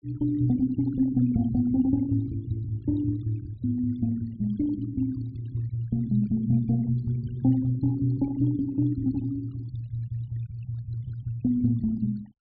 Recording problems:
low-pass filter; nothing above 4.8 kHz
noise reduction artefacts; signal-to-artefact ratio 23 dB

